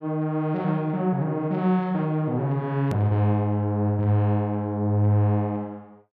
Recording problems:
edit click; at 3 s

